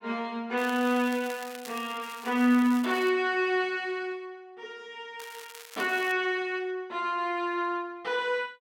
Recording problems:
crackle; from 0.5 to 3 s and at 5 s; loose cable, SNR 17 dB

